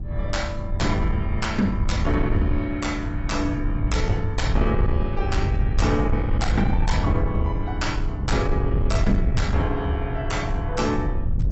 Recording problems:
lossy codec; AAC, log-spectral distance 2 dB, nothing above 7.8 kHz
distorted audio; soft clipping, signal-to-distortion ratio 12 dB
low-frequency rumble; below 110 Hz, SNR 0 dB

